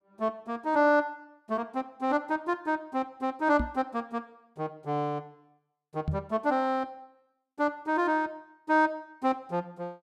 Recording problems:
microphone thump; at 3.5 s and at 6 s; peak +3 dB vs average level

